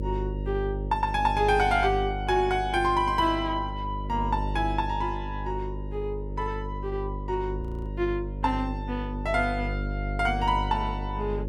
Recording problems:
electrical hum; 50 Hz, harmonics up to 600 Hz, SNR 6 dB
frozen audio; at 7.5 s

